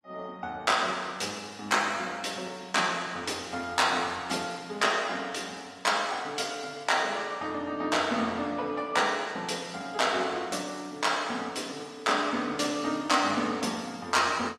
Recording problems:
lossy codec; AAC, log-spectral distance 4 dB, nothing above 13.8 kHz

